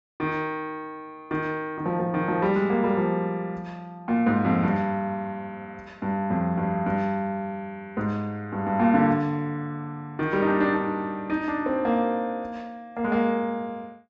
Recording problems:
treble missing; nothing above 7.9 kHz

